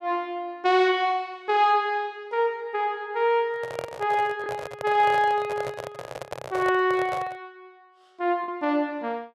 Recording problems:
packet loss; 0.7% of the sound replaced, filled with the last packet
handling noise; from 3.5 to 7.5 s; peak -3 dB vs average level

